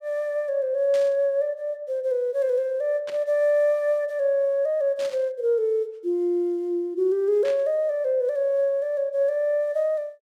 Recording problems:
burst of static; 4 times, first at 1 s; peak -12 dB vs average level

